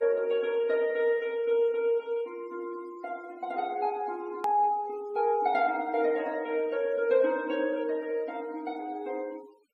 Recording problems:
noise reduction artefacts; signal-to-artefact ratio 27 dB
click at an edit; at 4.5 s

